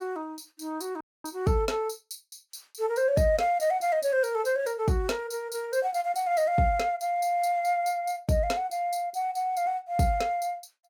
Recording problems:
dropout; at 1 s

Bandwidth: 17.5 kHz